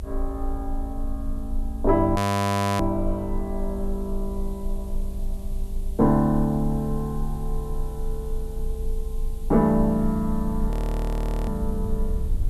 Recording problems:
hiss; SNR 27 dB
rumble; below 58 Hz, strongest tone 26 Hz, SNR 5 dB
audio freezing; at 2 s for 0.5 s and at 11 s for 1 s

